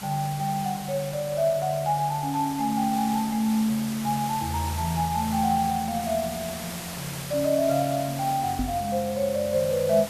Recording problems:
background hiss; slope -2 dB per octave, SNR 10 dB
microphone thump; at 8.5 s; peak +1 dB vs average level

